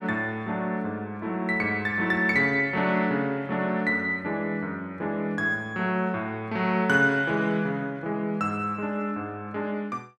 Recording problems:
none

